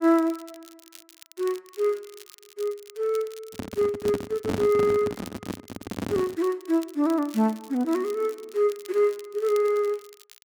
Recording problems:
crackle; vinyl, SNR 22 dB
handling noise; from 3.5 to 6.5 s; peak +1 dB vs average level

